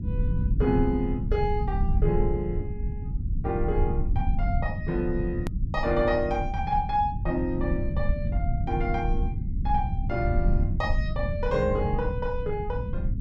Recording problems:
rumble; below 110 Hz, SNR 0 dB
edit click; at 5.5 s

